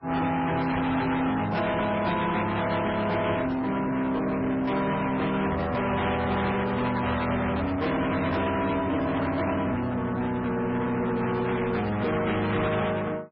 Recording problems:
lossy codec; MP3, then MP3, log-spectral distance 3 dB, nothing above 5.3 kHz
distorted audio; soft clipping, signal-to-distortion ratio 7 dB

